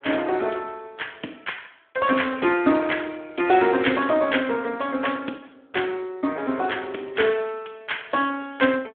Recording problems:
telephone audio; 220 Hz to 3.5 kHz, Speex

